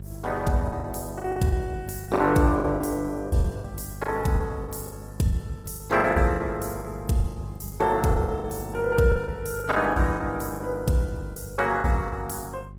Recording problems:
lossy codec; Opus, log-spectral distance 4 dB, nothing above 18.5 kHz
mains hum; 50 Hz, harmonics up to 450 Hz, SNR 13 dB
packet loss; 13% of the sound replaced, filled with the last packet

